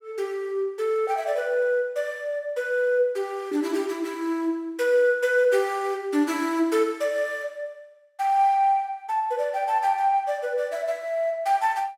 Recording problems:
none

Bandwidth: 16.5 kHz